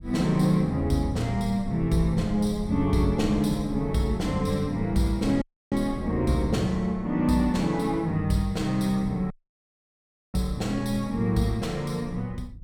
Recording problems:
low-frequency rumble; below 98 Hz, SNR 15 dB
dropout; at 5.5 s and at 9.5 s for 1 s

